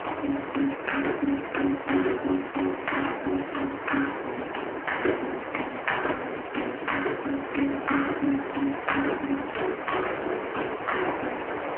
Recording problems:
telephone audio; 240 Hz to 3 kHz, AMR-NB
hiss; SNR 5 dB
wind noise; below 440 Hz, SNR 21 dB

